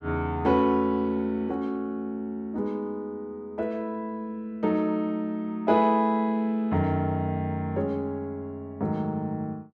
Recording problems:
none

